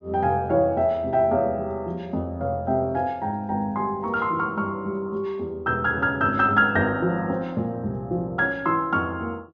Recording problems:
low-pass filter; nothing above 6.8 kHz

